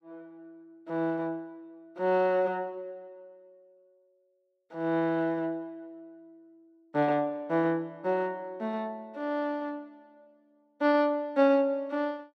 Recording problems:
none

